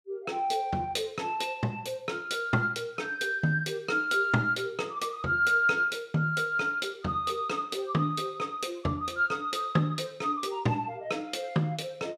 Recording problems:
none

